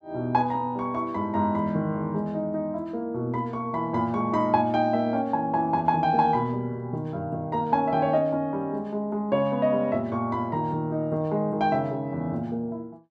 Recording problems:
none

